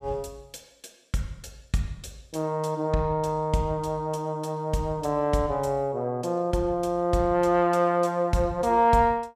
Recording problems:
none

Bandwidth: 14.5 kHz